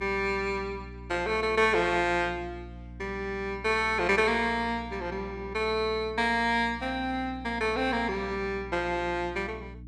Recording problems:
hum; 60 Hz, harmonics up to 300 Hz, SNR 16 dB

